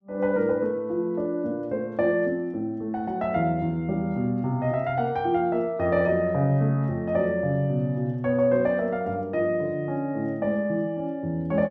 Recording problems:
none

